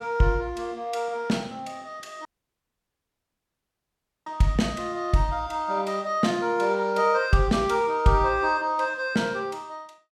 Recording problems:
dropout; at 2.5 s for 2 s

